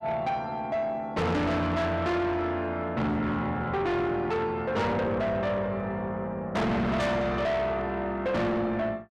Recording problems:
distorted audio; soft clipping, signal-to-distortion ratio 6 dB

